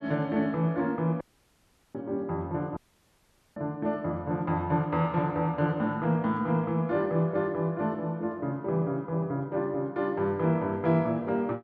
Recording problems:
audio cutting out; at 1 s for 0.5 s and at 3 s for 1 s

